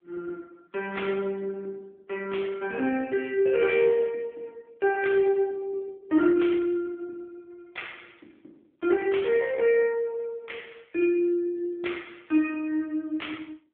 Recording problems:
phone line; 220 Hz to 3.4 kHz, AMR-NB

